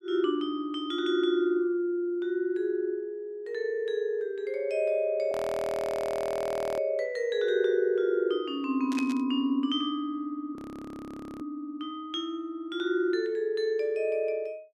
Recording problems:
frozen audio; at 5.5 s for 1.5 s and at 11 s for 1 s
static burst; at 9 s; peak -6 dB vs average level

